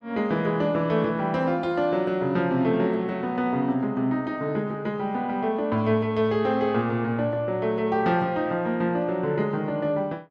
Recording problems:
none

